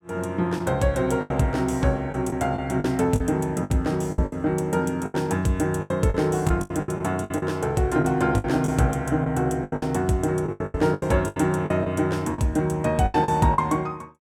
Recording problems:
lost packets; 13% of the sound replaced, filled with the last packet

